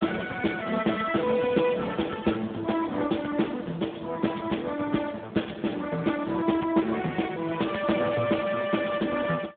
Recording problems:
phone line; 130 Hz to 2.9 kHz, Speex

